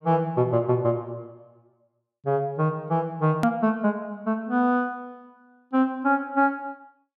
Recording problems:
hard cut with a click; at 3.5 s

